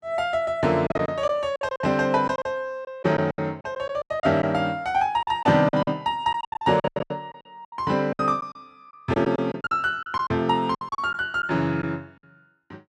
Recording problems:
packet loss; 14% of the sound replaced, filled with silence

